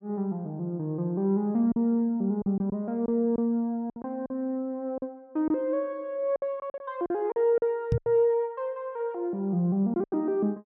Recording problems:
packet loss; 7% of the sound replaced, filled with silence
microphone thump; at 8 s; peak +4 dB vs average level

